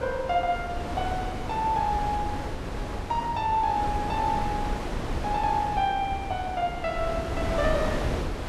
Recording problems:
wind on the microphone; below 610 Hz, SNR 4 dB

